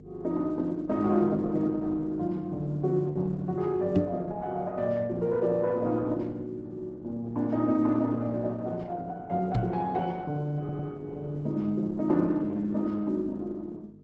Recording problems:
lossy codec; Opus, log-spectral distance 2 dB, nothing above 7.3 kHz
hum; 50 Hz, harmonics up to 450 Hz, SNR 20 dB
microphone thump; at 4 s and at 9.5 s; peak +8 dB vs average level
stutter; at 11 s

